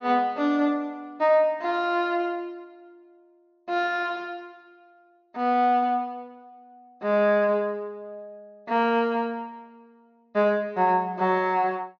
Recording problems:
low-pass filter; nothing above 6.5 kHz

